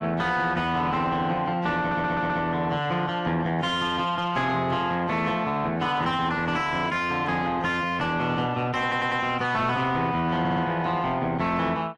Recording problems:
codec artefacts; AAC, log-spectral distance 2 dB, nothing above 10.7 kHz
distortion; soft clipping, signal-to-distortion ratio 11 dB
audio stuttering; at 2 s, at 9 s and at 10 s

